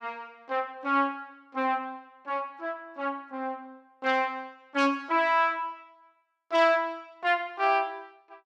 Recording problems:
none

